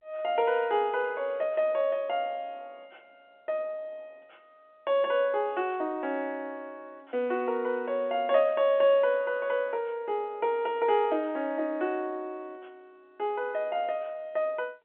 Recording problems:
telephone audio; 280 Hz to 3.8 kHz, G.711

